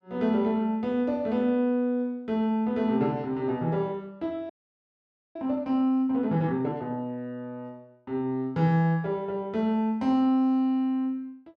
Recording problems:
frozen audio; at 4.5 s for 1 s

